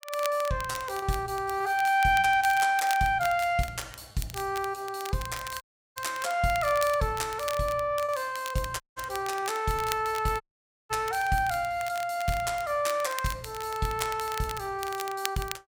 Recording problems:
crackling; vinyl, SNR 13 dB
packet loss; 2% of the sound replaced, filled with repeated pitch periods
dropout; at 5.5 s, at 9 s and at 10 s

